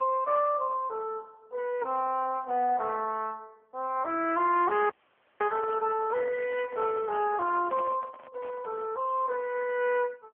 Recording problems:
telephone audio; 280 Hz to 3.1 kHz, AMR-NB
microphone handling noise; from 4.5 to 9 s; peak -8 dB vs average level
audio cutting out; at 5 s for 0.5 s

